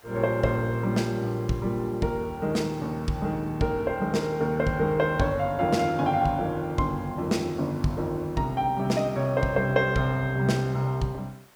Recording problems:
hiss; SNR 27 dB

